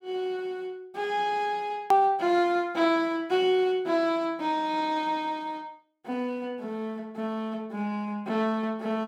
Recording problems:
edit click; at 2 s

